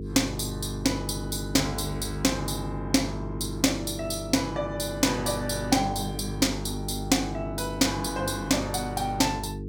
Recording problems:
electrical hum; 50 Hz, harmonics up to 450 Hz, SNR 7 dB

